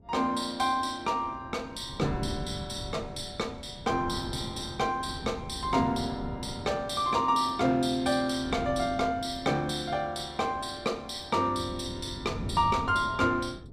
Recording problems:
wind on the microphone; below 240 Hz, SNR 12 dB

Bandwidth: 15 kHz